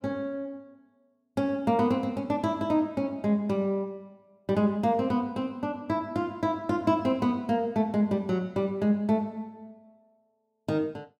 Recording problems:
none

